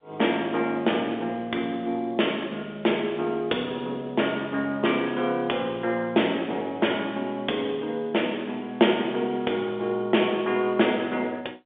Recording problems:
telephone audio; 220 Hz to 3.6 kHz, G.711

